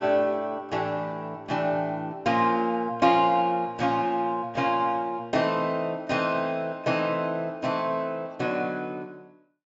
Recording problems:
treble missing; nothing above 8 kHz

